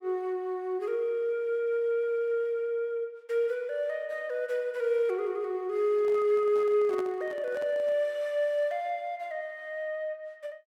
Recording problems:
microphone handling noise; from 6 to 8 s; peak -8 dB vs average level

